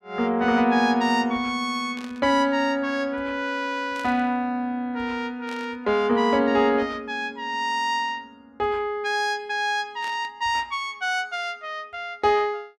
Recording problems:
burst of static; 4 times, first at 2 s; peak -13 dB vs average level

